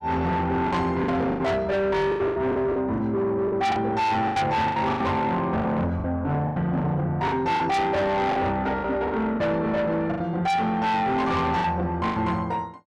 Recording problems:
distorted audio; soft clipping, signal-to-distortion ratio 7 dB
packet loss; 11% of the sound replaced, filled with the last packet

